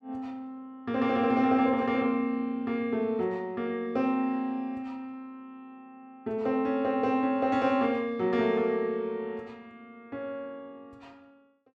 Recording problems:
none

